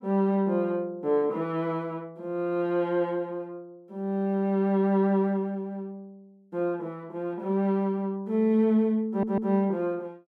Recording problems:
audio stuttering; at 9 s

